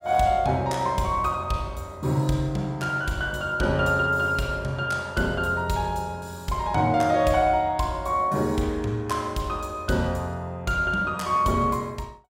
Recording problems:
none

